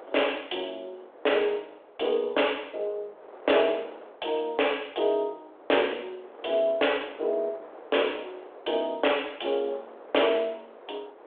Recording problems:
phone line; 340 Hz to 3.5 kHz, G.726
wind noise; below 870 Hz, SNR 20 dB

